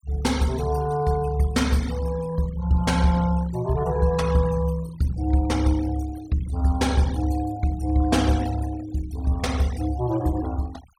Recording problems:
denoising artefacts; signal-to-artefact ratio 18 dB

